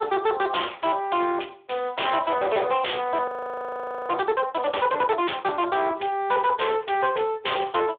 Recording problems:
telephone audio; 300 Hz to 3.5 kHz, Speex
distorted audio; hard clipping, uneven, signal-to-distortion ratio 6 dB
audio freezing; at 3.5 s for 1 s

